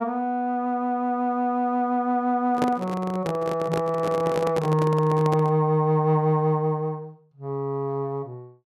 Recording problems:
microphone handling noise; from 2.5 to 5.5 s; peak 0 dB vs average level

